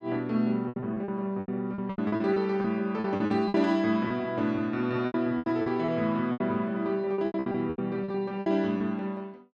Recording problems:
packet loss; 15% of the sound replaced, filled with repeated pitch periods

